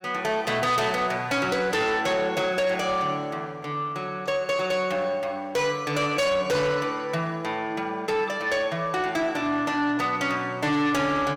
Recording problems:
distorted audio; soft clipping, signal-to-distortion ratio 11 dB

